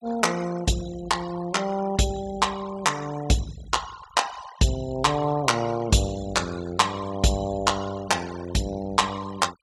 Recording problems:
denoising artefacts; signal-to-artefact ratio 18 dB

